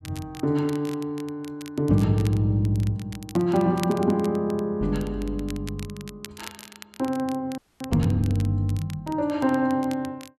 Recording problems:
crackle; vinyl, SNR 19 dB
frozen audio; at 7.5 s

